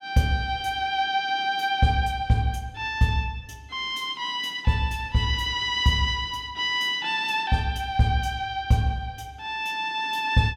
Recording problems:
none

